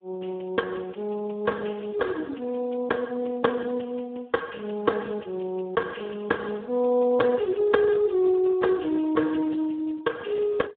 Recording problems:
telephone audio; 260 Hz to 2.3 kHz, Speex

